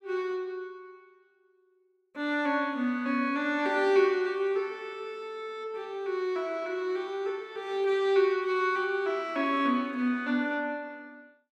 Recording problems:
none

